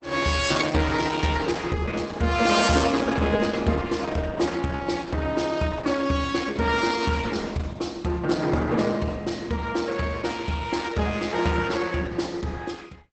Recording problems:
codec artefacts; Opus, log-spectral distance 5 dB, nothing above 8 kHz

